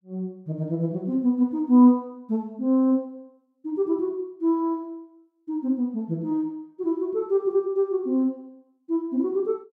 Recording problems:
none

